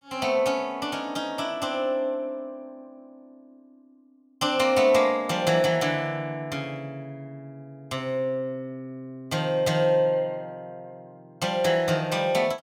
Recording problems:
none

